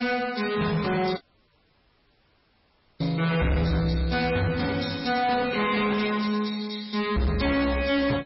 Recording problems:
lossy codec; MP3, log-spectral distance 7 dB, nothing above 5.5 kHz
distorted audio; soft clipping, signal-to-distortion ratio 8 dB
audio cutting out; at 1 s for 2 s

